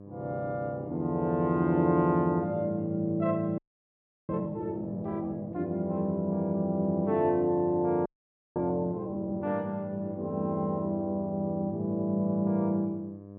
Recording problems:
electrical hum; 50 Hz, harmonics up to 1.1 kHz, SNR 15 dB
audio freezing; at 3.5 s for 0.5 s and at 8 s for 0.5 s

